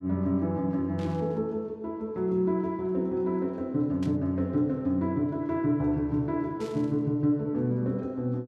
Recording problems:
static burst; at 1 s, at 4 s and at 6.5 s; peak -13 dB vs average level

